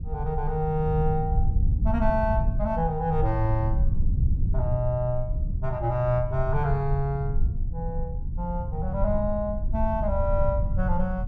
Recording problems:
low-frequency rumble; below 86 Hz, SNR 1 dB

